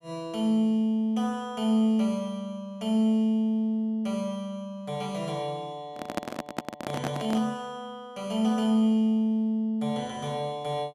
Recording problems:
handling noise; from 6 to 7.5 s; peak +1 dB vs average level

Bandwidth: 14.5 kHz